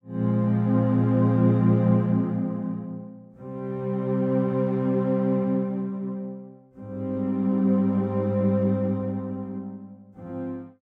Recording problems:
none

